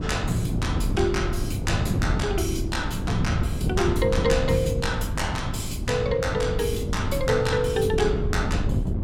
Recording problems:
hum; 50 Hz, harmonics up to 300 Hz, SNR 13 dB
wind noise; below 190 Hz, SNR 1 dB

